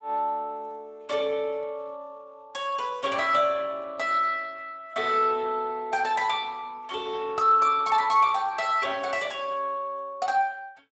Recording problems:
lossy compression; Speex, log-spectral distance 3 dB, nothing above 7.6 kHz

